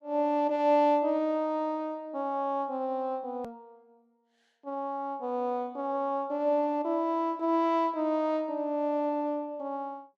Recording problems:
edit click; at 3.5 s

